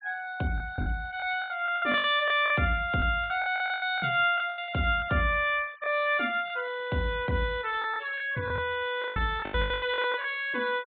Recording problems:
treble cut off; nothing above 4 kHz
noise reduction artefacts; signal-to-artefact ratio 25 dB
packet loss; 14% of the sound replaced, filled with the last packet

